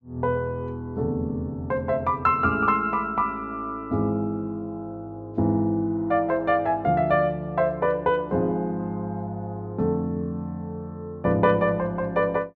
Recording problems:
none

